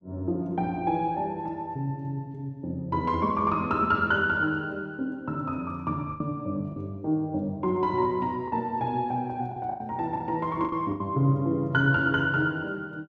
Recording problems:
packet loss; 4% of the sound replaced, filled with the last packet

